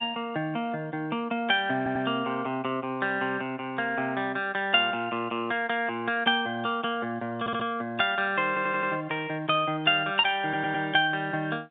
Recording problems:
telephone audio; 170 Hz to 3.7 kHz, G.711
stutter; 4 times, first at 2 s

